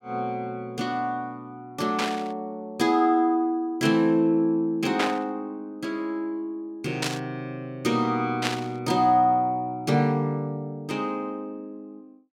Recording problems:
static burst; 4 times, first at 2 s; peak +3 dB vs average level

